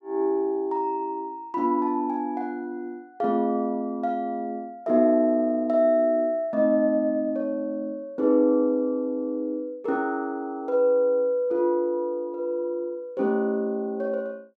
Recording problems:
none

